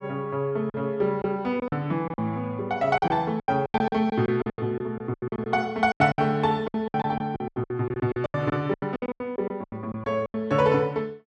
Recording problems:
packet loss; 18% of the sound replaced, filled with silence

